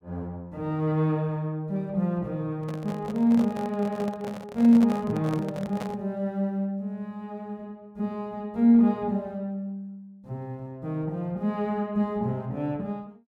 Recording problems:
handling noise; from 2.5 to 6 s; peak -4 dB vs average level

